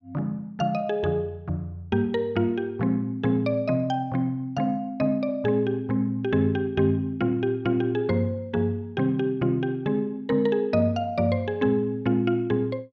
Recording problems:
none

